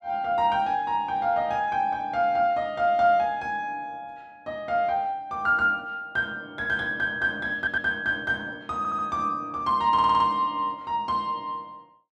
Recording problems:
audio stuttering; at 7.5 s, at 9 s and at 10 s

